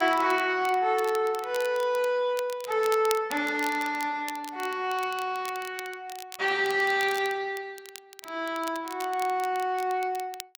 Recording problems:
crackling; vinyl, SNR 16 dB

